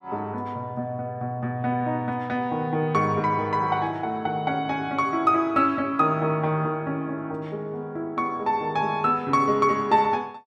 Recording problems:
none

